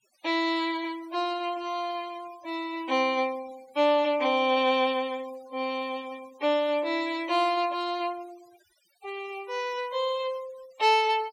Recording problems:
noise reduction artefacts; signal-to-artefact ratio 22 dB

